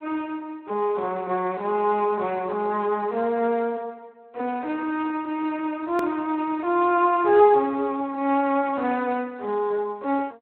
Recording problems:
telephone audio; 280 Hz to 2.9 kHz, Speex
edit click; at 6 s

